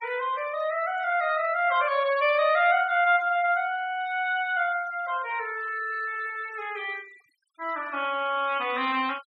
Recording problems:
denoising artefacts; signal-to-artefact ratio 22 dB

